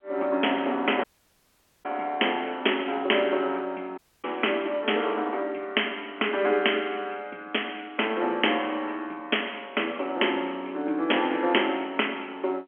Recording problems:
phone line; 260 Hz to 3.3 kHz, G.711
dropout; at 1 s for 1 s and at 4 s

